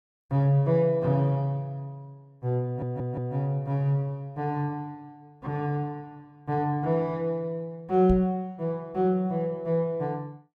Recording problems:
stutter; at 2.5 s
microphone thump; at 8 s; peak +2 dB vs average level

